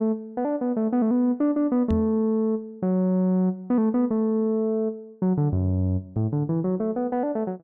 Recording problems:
microphone bump; at 2 s; peak 0 dB vs average level

